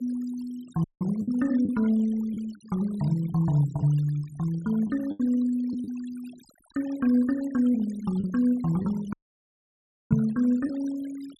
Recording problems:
noise reduction artefacts; signal-to-artefact ratio 23 dB
packet loss; 3% of the sound replaced, filled with the last packet
audio cutting out; at 1 s and at 9 s for 1 s
knock on the microphone; at 10 s; peak +8 dB vs average level

